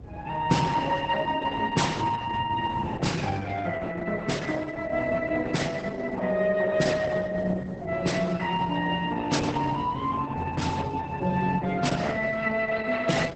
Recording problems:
lossy codec; Opus, then Opus, log-spectral distance 4 dB, nothing above 8 kHz
wind noise; below 290 Hz, SNR 13 dB

